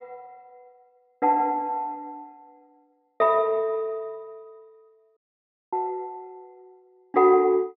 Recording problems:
low-pass filter; nothing above 5.5 kHz
audio cutting out; at 5 s for 0.5 s

